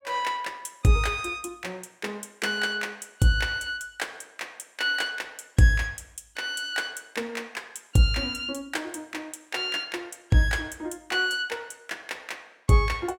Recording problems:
none

